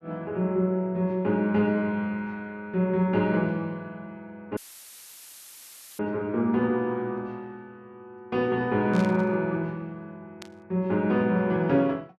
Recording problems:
audio cutting out; at 4.5 s for 1.5 s; filled with static
static burst; at 9 s and at 10 s; peak -11 dB vs average level

